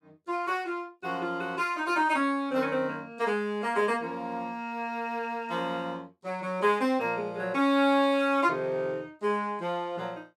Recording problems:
none

